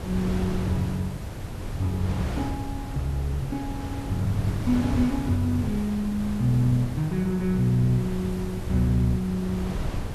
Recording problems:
hiss; slope -3 dB per octave, SNR 22 dB
wind on the microphone; below 240 Hz, SNR 6 dB

